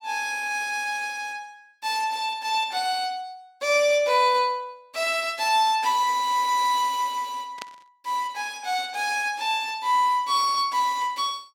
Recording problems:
static burst; at 7.5 s; peak -7 dB vs average level

